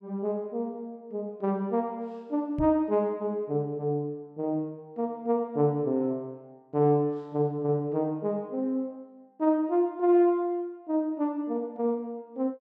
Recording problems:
microphone bump; at 2.5 s; peak -2 dB vs average level

